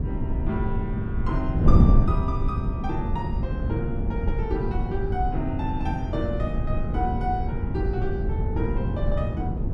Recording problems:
wind on the microphone; below 140 Hz, SNR -5 dB

